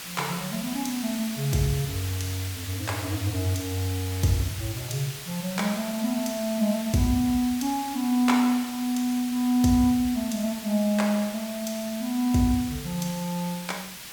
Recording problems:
background hiss; slope +1 dB per octave, SNR 10 dB

